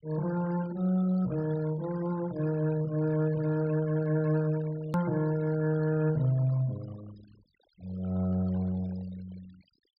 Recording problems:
treble missing; nothing above 5.5 kHz
denoising artefacts; signal-to-artefact ratio 21 dB
click at an edit; at 5 s

